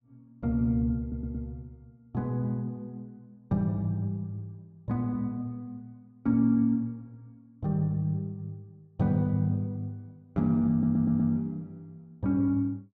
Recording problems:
stutter; at 1 s and at 11 s

